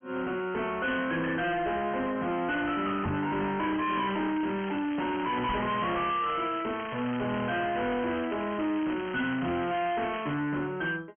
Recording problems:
low-pass filter; nothing above 3.2 kHz
distortion; soft clipping, signal-to-distortion ratio 7 dB
knock on the microphone; at 3 s and at 5.5 s; peak +4 dB vs average level
crackling; from 3.5 to 6 s and from 6 to 10 s; loose cable, SNR 13 dB

